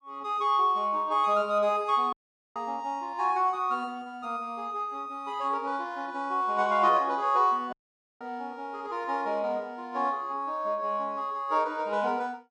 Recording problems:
dropout; at 2 s and at 7.5 s

